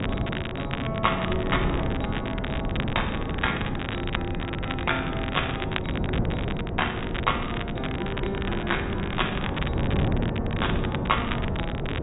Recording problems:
low-pass filter; nothing above 4 kHz
wind noise; below 330 Hz, SNR 0 dB
crackle; vinyl, SNR 5 dB

